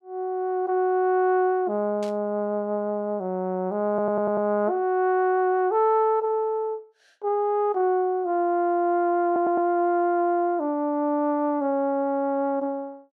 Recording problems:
burst of static; at 2 s; peak -14 dB vs average level
audio stuttering; at 4 s and at 9.5 s

